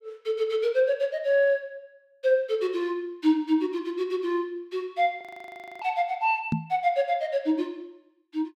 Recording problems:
audio freezing; at 5 s for 0.5 s
microphone thump; at 6.5 s; peak +4 dB vs average level

